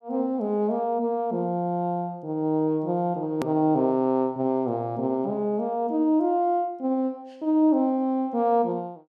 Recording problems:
hard cut with a click; at 3.5 s

